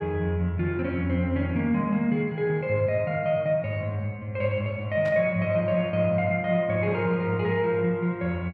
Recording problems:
burst of static; at 5 s; peak -12 dB vs average level

